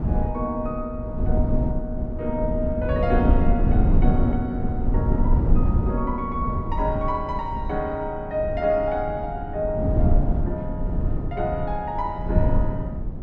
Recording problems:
rumble; below 120 Hz, SNR -2 dB

